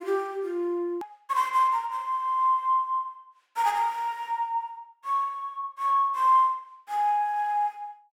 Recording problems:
edit click; at 1 s

